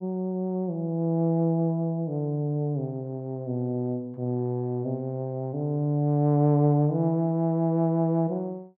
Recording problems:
none

